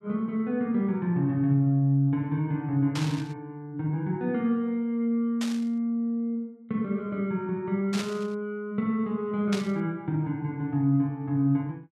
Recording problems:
static burst; 4 times, first at 3 s; peak -3 dB vs average level

